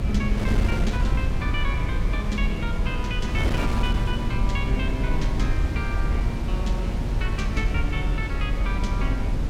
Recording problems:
low-frequency rumble; below 80 Hz, strongest tone 42 Hz, SNR -3 dB
wind noise; below 330 Hz, SNR 1 dB

